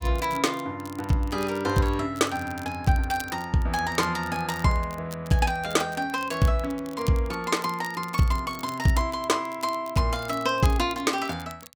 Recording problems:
crackle; vinyl, SNR 19 dB

